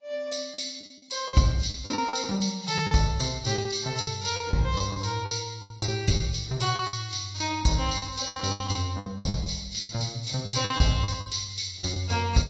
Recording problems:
lossy compression; AAC, log-spectral distance 8 dB
packet loss; 14% of the sound replaced, filled with the last packet

